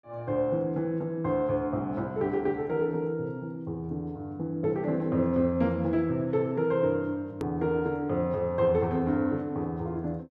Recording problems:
edit click; at 7.5 s

